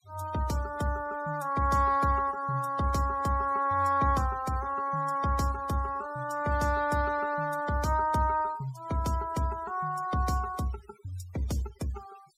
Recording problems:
denoising artefacts; signal-to-artefact ratio 21 dB

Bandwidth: 16 kHz